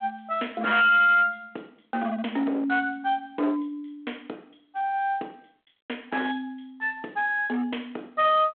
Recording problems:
telephone audio; 260 Hz to 3.4 kHz, G.726
distortion; hard clipping, signal-to-distortion ratio 11 dB

